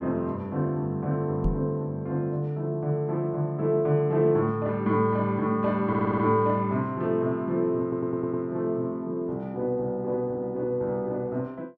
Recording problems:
knock on the microphone; at 1.5 s; peak +2 dB vs average level
audio stuttering; at 6 s and at 8 s

